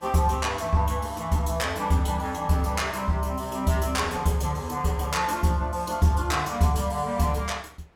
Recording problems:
wind noise; below 1.6 kHz, SNR 25 dB

